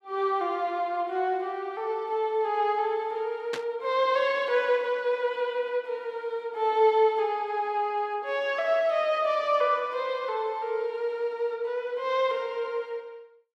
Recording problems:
static burst; at 3.5 s; peak -3 dB vs average level

